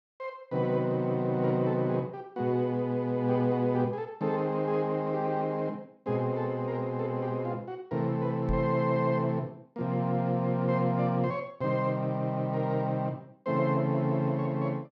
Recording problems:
microphone bump; at 8.5 s; peak -1 dB vs average level

